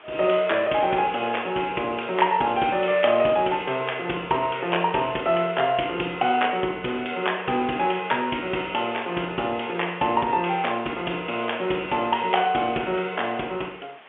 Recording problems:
telephone audio; 220 Hz to 3.4 kHz, G.711
background hiss; SNR 23 dB

